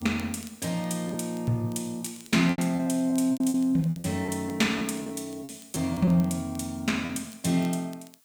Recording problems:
background hiss; SNR 28 dB
crackling; vinyl, SNR 26 dB
packet loss; 8% of the sound replaced, filled with repeated pitch periods

